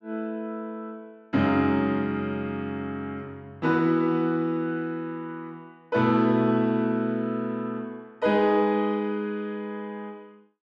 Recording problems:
none

